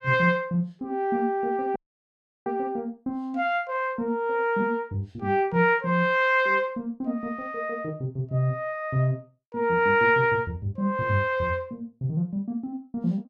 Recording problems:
audio cutting out; at 2 s for 0.5 s

